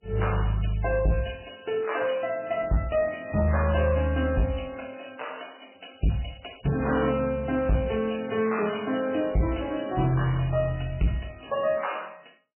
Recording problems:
codec artefacts; MP3, log-spectral distance 8 dB, nothing above 2.7 kHz
distortion; soft clipping, signal-to-distortion ratio 10 dB

